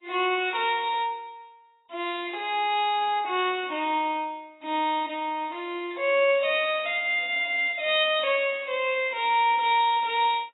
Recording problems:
codec artefacts; AAC, log-spectral distance 3 dB, nothing above 3.3 kHz

